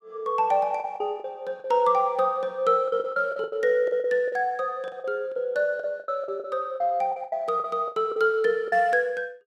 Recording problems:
packet loss; 13% of the sound replaced, filled with the last packet

